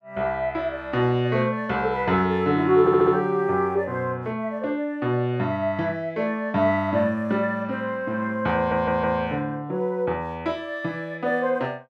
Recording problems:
audio stuttering; at 3 s and at 8.5 s

